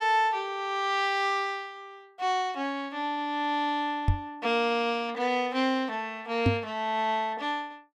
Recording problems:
microphone bump; at 4 s and at 6.5 s; peak +8 dB vs average level

